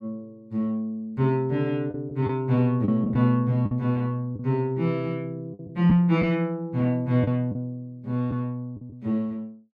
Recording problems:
packet loss; 5% of the sound replaced, filled with the last packet

